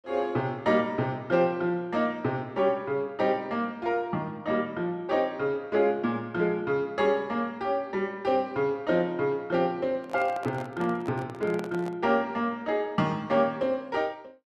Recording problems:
microphone handling noise; from 10 to 12 s; peak -6 dB vs average level

